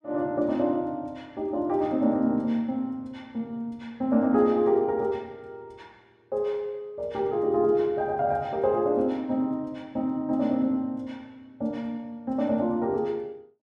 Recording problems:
none

